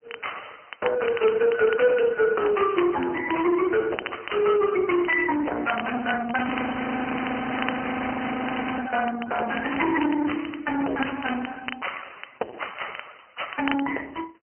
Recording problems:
phone line; 300 Hz to 3.1 kHz, AMR-NB
distorted audio; soft clipping, signal-to-distortion ratio 9 dB
crackling; vinyl, SNR 13 dB
frozen audio; at 6.5 s for 2.5 s

